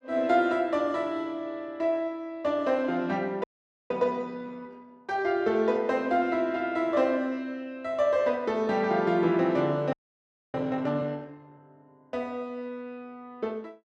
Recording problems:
audio freezing; at 3.5 s and at 10 s for 0.5 s

